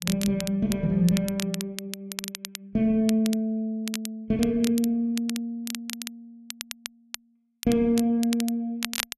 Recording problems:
crackle; vinyl, SNR 11 dB

